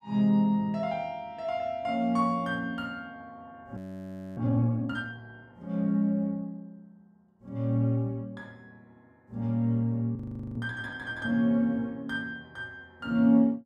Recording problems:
frozen audio; at 4 s for 0.5 s and at 10 s

